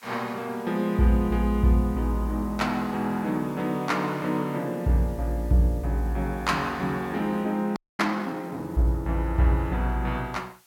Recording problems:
background hiss; slope +2 dB per octave, SNR 27 dB
audio freezing; at 8 s

